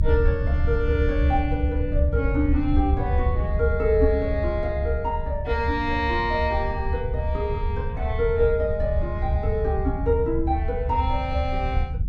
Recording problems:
low-frequency rumble; below 78 Hz, SNR 1 dB

